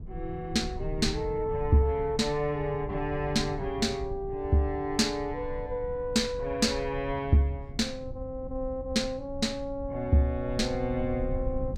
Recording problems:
rumble; below 96 Hz, SNR 12 dB

